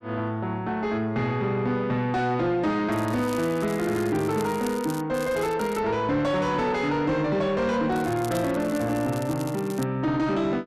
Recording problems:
distortion; soft clipping, signal-to-distortion ratio 11 dB
crackling; 4 times, first at 3 s; loose cable, SNR 17 dB

